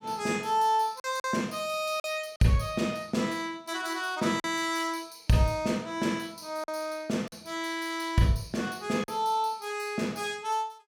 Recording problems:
lost packets; 3% of the sound replaced, filled with silence

